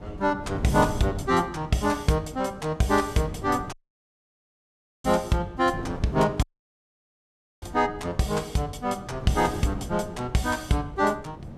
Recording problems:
wind on the microphone; below 290 Hz, SNR 13 dB
audio cutting out; at 3.5 s for 1.5 s and at 6.5 s for 1 s

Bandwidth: 14.5 kHz